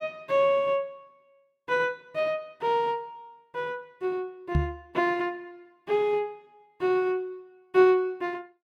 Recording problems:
microphone thump; at 4.5 s; peak +6 dB vs average level

